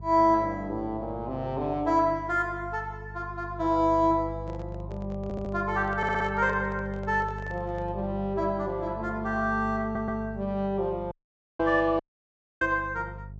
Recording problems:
low-pass filter; nothing above 8 kHz
hum; 50 Hz, harmonics up to 400 Hz, SNR 13 dB
handling noise; from 4.5 to 8 s; peak -11 dB vs average level
stutter; at 5 s, at 6 s and at 10 s
dropout; at 11 s and at 12 s for 0.5 s

